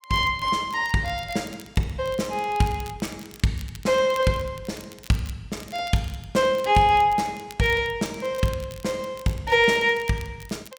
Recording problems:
crackle; vinyl, SNR 22 dB

